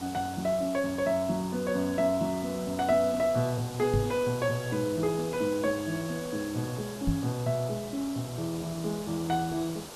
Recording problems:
hiss; SNR 13 dB
knock on the microphone; at 4 s and at 7 s; peak +5 dB vs average level

